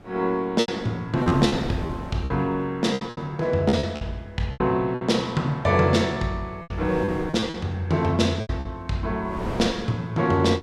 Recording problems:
wind on the microphone; below 610 Hz, SNR 12 dB
packet loss; 10% of the sound replaced, filled with repeated pitch periods

